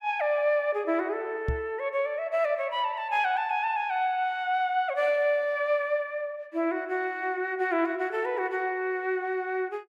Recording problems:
knock on the microphone; at 1.5 s; peak +2 dB vs average level

